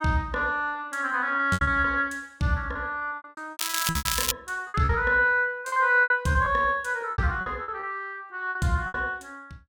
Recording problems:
lost packets; 14% of the sound replaced, filled with repeated pitch periods
crackling; at 3.5 s; loose cable, SNR 2 dB

